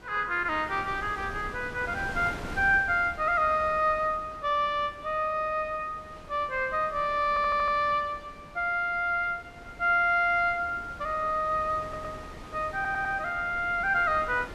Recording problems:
wind on the microphone; below 990 Hz, SNR 17 dB
stutter; at 7.5 s, at 12 s and at 13 s

